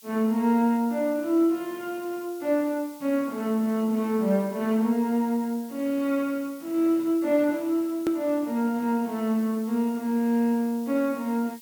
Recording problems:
hiss; slope +6 dB per octave, SNR 22 dB
hard cut with a click; at 8 s

